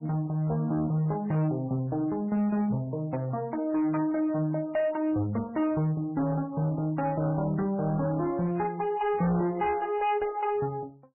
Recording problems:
lossy codec; MP3, log-spectral distance 2 dB, nothing above 2.5 kHz
distorted audio; hard clipping, uneven, signal-to-distortion ratio 12 dB

